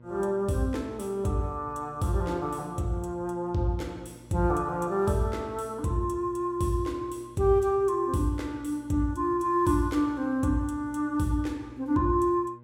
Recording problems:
hum; 60 Hz, harmonics up to 1.1 kHz, SNR 23 dB

